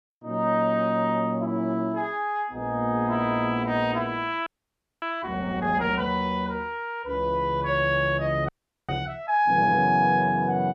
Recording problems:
audio freezing; at 4.5 s for 0.5 s and at 8.5 s

